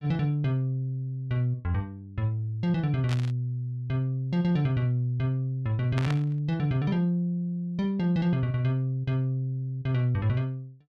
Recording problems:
static burst; at 3 s and at 6 s; peak -4 dB vs average level

